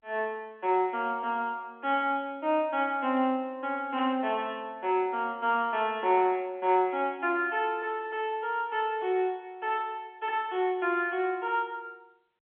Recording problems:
telephone audio; 220 Hz to 3.5 kHz, G.711

